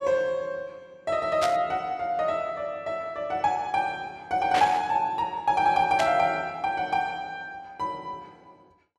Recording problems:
static burst; at 1.5 s, at 4.5 s and at 6 s; peak +1 dB vs average level

